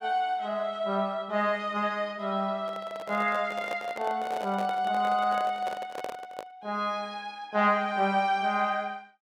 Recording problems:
microphone handling noise; from 2.5 to 6.5 s; peak -3 dB vs average level

